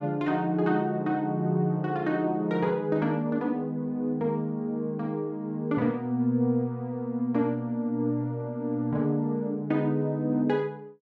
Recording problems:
none

